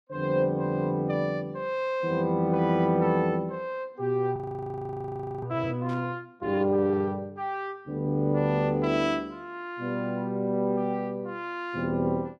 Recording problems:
frozen audio; at 4.5 s for 1 s
burst of static; at 6 s; peak -17 dB vs average level

